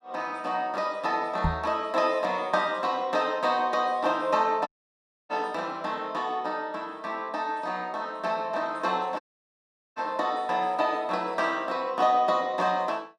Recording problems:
microphone thump; at 1.5 s; peak +4 dB vs average level
dropout; at 4.5 s for 0.5 s and at 9 s for 1 s

